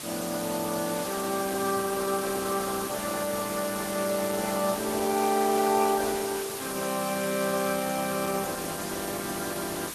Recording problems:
lossy codec; Opus, log-spectral distance 9 dB
hiss; slope -1 dB per octave, SNR 7 dB

